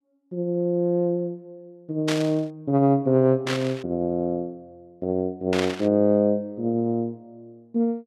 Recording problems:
static burst; at 2 s, at 3.5 s and at 5.5 s; peak 0 dB vs average level

